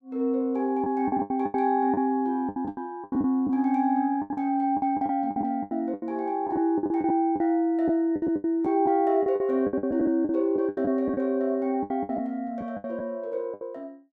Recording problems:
lost packets; 15% of the sound replaced, filled with the last packet

